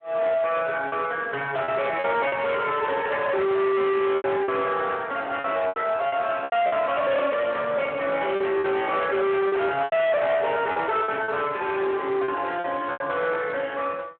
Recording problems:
telephone audio; 280 Hz to 3.5 kHz, Speex
distortion; hard clipping, uneven, signal-to-distortion ratio 6 dB
lost packets; 7% of the sound replaced, filled with repeated pitch periods
microphone handling noise; from 7.5 to 10 s; peak -7 dB vs average level

